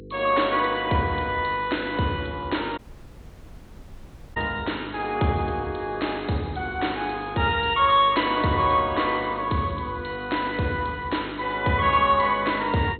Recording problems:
lossy compression; MP2, log-spectral distance 6 dB, nothing above 3.9 kHz
hum; 50 Hz, harmonics up to 500 Hz, SNR 18 dB
audio cutting out; at 3 s for 1.5 s

